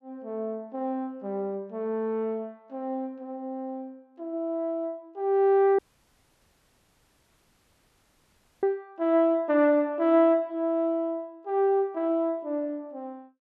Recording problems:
audio cutting out; at 6 s for 3 s

